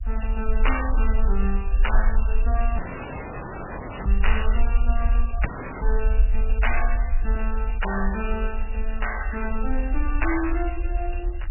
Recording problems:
codec artefacts; MP3, log-spectral distance 7 dB, nothing above 2.9 kHz
rumble; below 48 Hz, strongest tone 20 Hz, SNR -4 dB
dropout; at 3 s for 1.5 s and at 5.5 s

